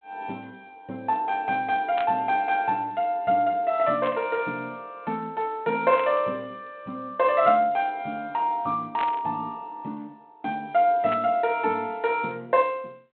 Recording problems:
telephone audio; 300 Hz to 3.6 kHz, G.726
burst of static; 5 times, first at 2 s; peak -5 dB vs average level

